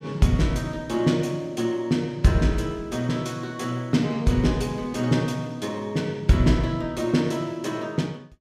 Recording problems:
none

